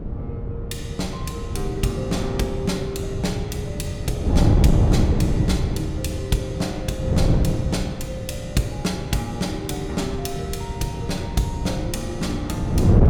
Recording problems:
wind noise; below 190 Hz, SNR -2 dB

